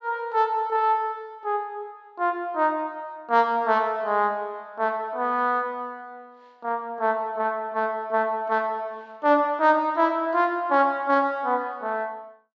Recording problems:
low-pass filter; nothing above 8 kHz

